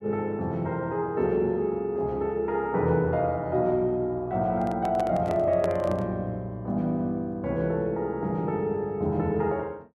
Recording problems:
microphone handling noise; from 4.5 to 6 s; peak -3 dB vs average level

